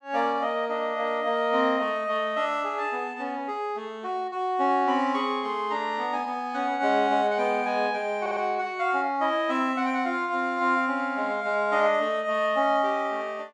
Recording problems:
audio stuttering; at 8 s

